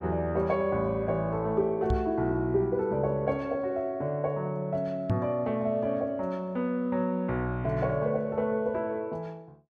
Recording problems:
knock on the microphone; at 2 s and at 5 s; peak +3 dB vs average level

